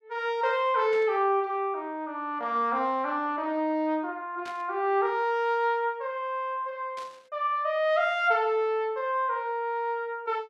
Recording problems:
static burst; at 1 s, at 4.5 s and at 7 s; peak -12 dB vs average level

